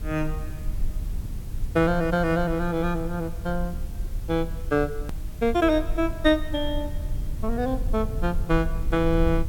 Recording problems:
hiss; slope -3 dB per octave, SNR 24 dB
low-frequency rumble; below 62 Hz, SNR 8 dB
edit click; at 5 s

